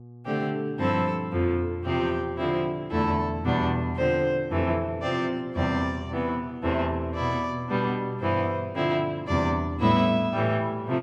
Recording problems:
hum; 60 Hz, harmonics up to 840 Hz, SNR 21 dB

